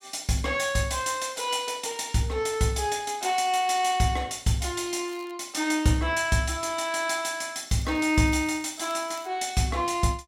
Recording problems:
crackling; at 5 s and from 7.5 to 9.5 s; loose cable, SNR 25 dB

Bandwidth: 16 kHz